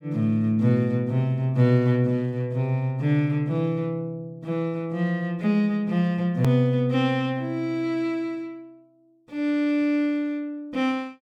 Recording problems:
click at an edit; at 6.5 s

